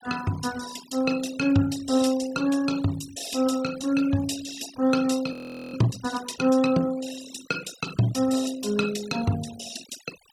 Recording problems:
denoising artefacts; signal-to-artefact ratio 16 dB
frozen audio; at 5.5 s

